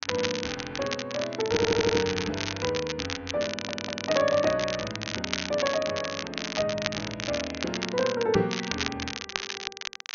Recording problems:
treble cut off; nothing above 6.6 kHz
crackling; vinyl, SNR 4 dB
stutter; at 1.5 s and at 3.5 s
microphone bump; at 8.5 s; peak +4 dB vs average level

